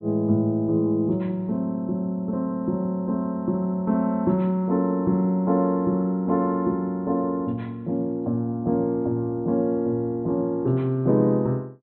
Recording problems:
treble missing; nothing above 4 kHz

